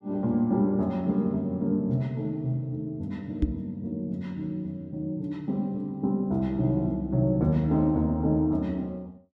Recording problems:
knock on the microphone; at 3.5 s; peak +5 dB vs average level

